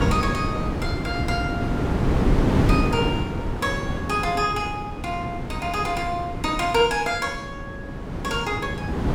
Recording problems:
wind noise; below 370 Hz, SNR 0 dB

